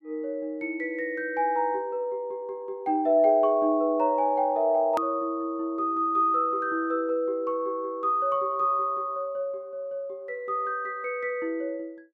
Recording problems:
edit click; at 5 s

